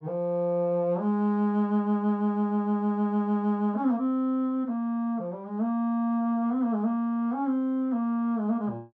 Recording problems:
none

